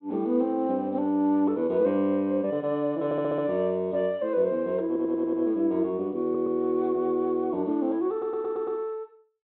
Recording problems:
low-pass filter; nothing above 4 kHz
audio stuttering; 4 times, first at 3 s

